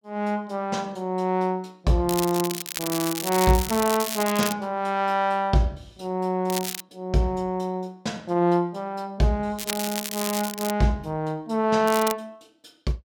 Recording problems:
crackling; 4 times, first at 2 s; loose cable, SNR 6 dB

